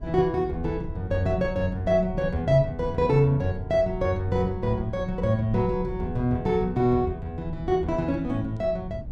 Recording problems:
rumble; below 120 Hz, SNR 12 dB

